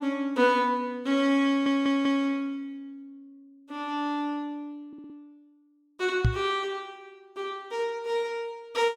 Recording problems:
audio stuttering; at 1.5 s and at 5 s
microphone bump; at 6.5 s; peak +8 dB vs average level

